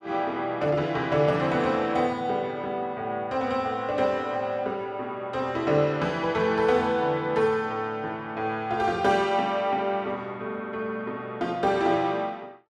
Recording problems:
none

